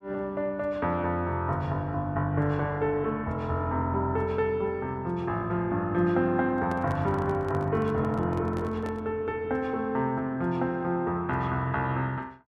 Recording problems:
microphone handling noise; from 6.5 to 9 s; peak -8 dB vs average level

